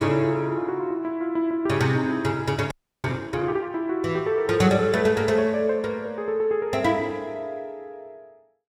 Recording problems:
audio freezing; at 2.5 s

